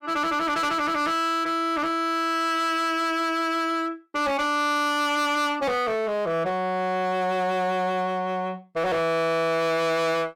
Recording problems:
distortion; hard clipping, signal-to-distortion ratio 8 dB

